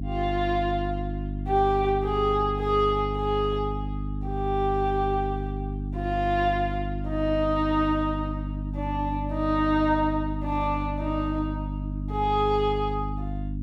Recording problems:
hum; 50 Hz, harmonics up to 300 Hz, SNR 5 dB

